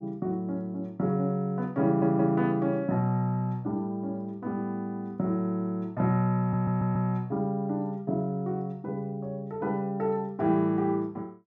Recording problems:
audio stuttering; at 2 s and at 6.5 s

